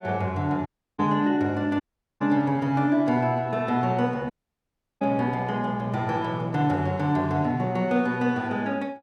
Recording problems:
audio cutting out; at 0.5 s, at 2 s and at 4.5 s for 0.5 s

